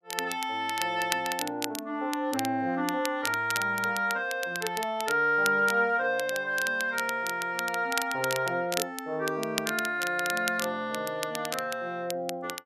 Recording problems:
crackling; vinyl, SNR 8 dB

